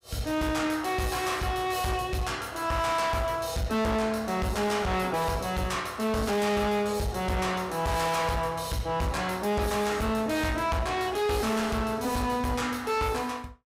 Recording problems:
distortion; hard clipping, signal-to-distortion ratio 8 dB

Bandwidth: 15.5 kHz